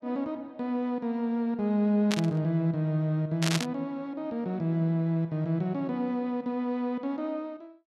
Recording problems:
static burst; at 2 s and at 3.5 s; peak +4 dB vs average level

